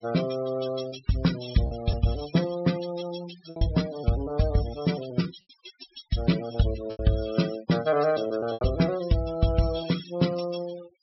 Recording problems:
treble missing; nothing above 5.6 kHz
denoising artefacts; signal-to-artefact ratio 15 dB
lost packets; 4% of the sound replaced, filled with repeated pitch periods

